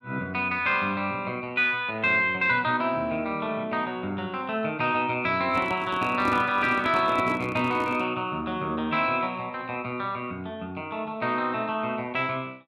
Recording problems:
microphone handling noise; from 5.5 to 8 s; peak -1 dB vs average level

